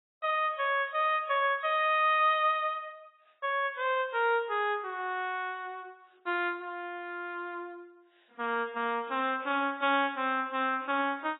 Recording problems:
lossy compression; AAC, log-spectral distance 2 dB, nothing above 3.4 kHz

